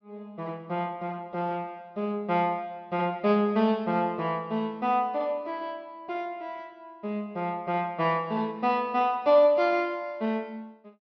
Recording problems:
low-pass filter; nothing above 6 kHz

